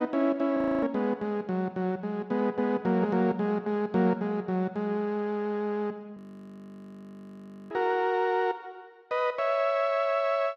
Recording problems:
frozen audio; at 0.5 s and at 6 s for 1.5 s

